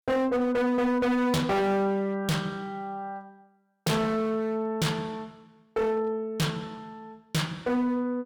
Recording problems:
distortion; hard clipping, signal-to-distortion ratio 6 dB

